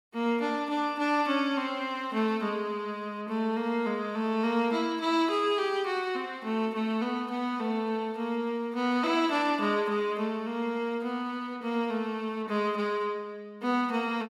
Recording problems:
none

